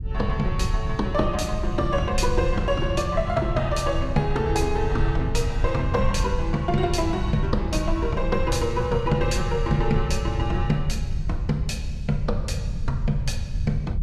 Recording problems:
low-frequency rumble; below 94 Hz, SNR 3 dB

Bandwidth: 14.5 kHz